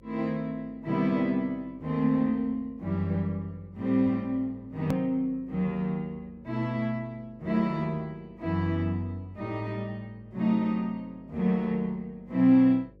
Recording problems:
hum; 50 Hz, harmonics up to 550 Hz, SNR 27 dB
edit click; at 5 s

